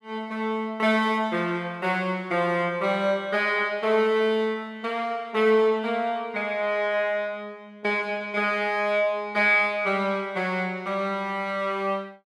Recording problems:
none

